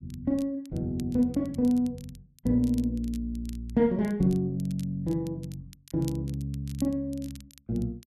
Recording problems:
crackle; vinyl, SNR 24 dB

